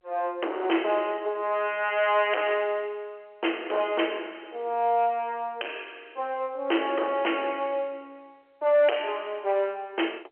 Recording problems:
telephone audio; 300 Hz to 3.2 kHz, G.711
distortion; hard clipping, signal-to-distortion ratio 9 dB

